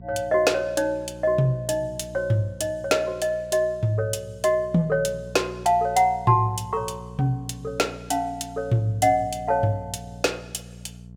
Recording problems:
hum; 60 Hz, harmonics up to 480 Hz, SNR 17 dB

